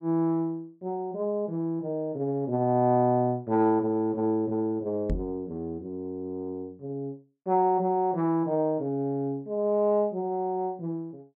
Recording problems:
microphone thump; at 5 s; peak +1 dB vs average level

